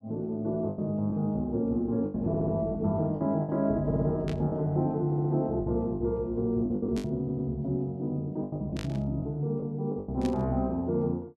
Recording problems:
lost packets; 9% of the sound replaced, filled with the last packet
audio stuttering; 4 times, first at 2.5 s
burst of static; 4 times, first at 4.5 s; peak -9 dB vs average level

